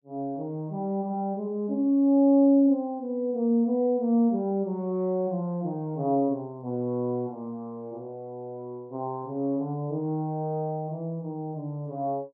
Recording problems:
none

